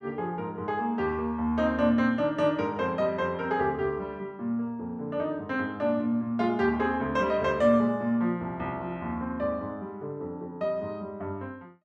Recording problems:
none

